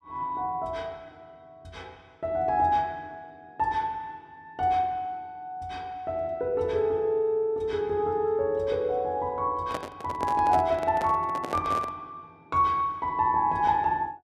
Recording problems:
microphone handling noise; from 9.5 to 12 s; peak -3 dB vs average level

